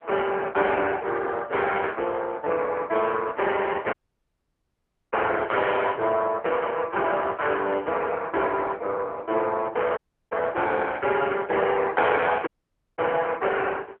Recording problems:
phone line; 340 Hz to 3.3 kHz, AMR-NB
dropout; at 4 s for 1 s, at 10 s and at 12 s for 0.5 s

